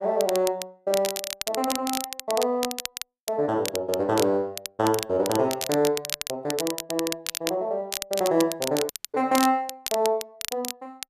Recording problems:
crackling; vinyl, SNR 6 dB
audio cutting out; at 9 s

